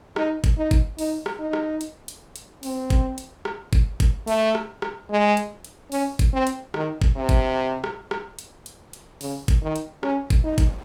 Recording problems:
wind on the microphone; below 890 Hz, SNR 26 dB

